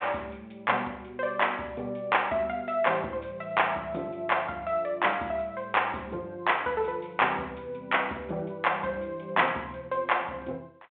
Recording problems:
phone line; 260 Hz to 3.5 kHz, G.726

